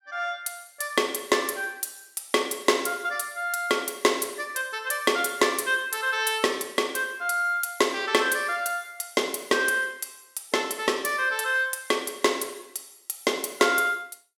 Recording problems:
none

